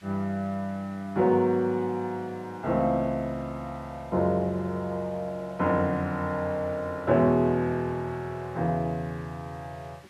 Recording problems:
background hiss; SNR 28 dB

